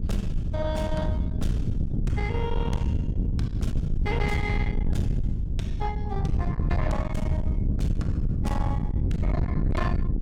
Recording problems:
distorted audio; soft clipping, signal-to-distortion ratio 12 dB
electrical hum; 50 Hz, harmonics up to 600 Hz, SNR 20 dB
wind on the microphone; below 140 Hz, SNR -5 dB

